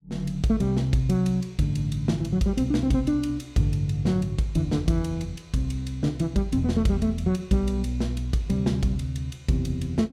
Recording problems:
none

